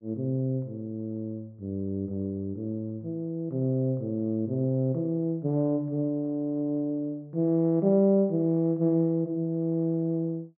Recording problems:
none

